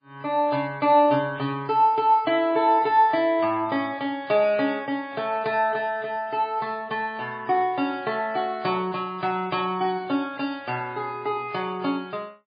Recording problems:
codec artefacts; MP3, log-spectral distance 2 dB, nothing above 4.8 kHz

